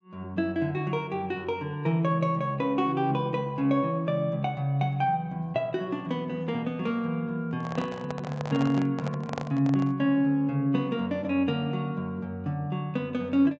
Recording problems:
treble missing; nothing above 8 kHz
handling noise; from 7.5 to 10 s; peak -2 dB vs average level

